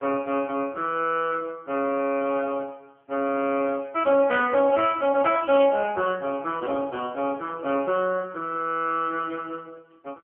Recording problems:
phone line; 190 Hz to 3.2 kHz, AMR-NB

